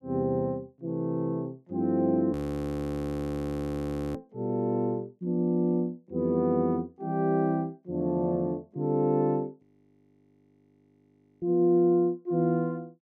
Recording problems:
frozen audio; at 2.5 s for 2 s and at 9.5 s for 2 s

